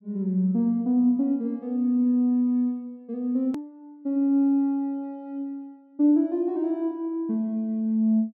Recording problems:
edit click; at 3.5 s

